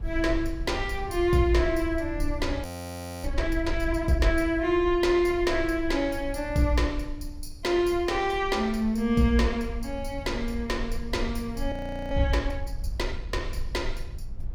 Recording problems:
low-frequency rumble; below 62 Hz, SNR 10 dB
audio freezing; at 2.5 s for 0.5 s and at 12 s

